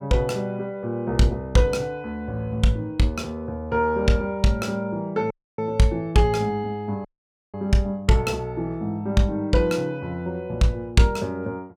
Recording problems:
audio cutting out; at 5.5 s and at 7 s

